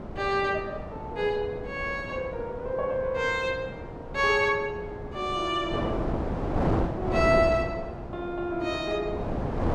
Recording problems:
wind noise; below 600 Hz, SNR 5 dB

